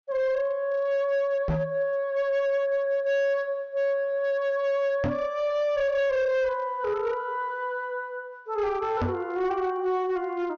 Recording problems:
treble missing; nothing above 6.6 kHz
distorted audio; hard clipping, signal-to-distortion ratio 11 dB
microphone bump; at 1.5 s, at 5 s and at 9 s; peak +3 dB vs average level

